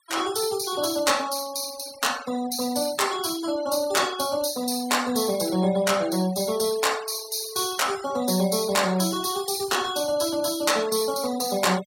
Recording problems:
denoising artefacts; signal-to-artefact ratio 16 dB

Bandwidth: 16.5 kHz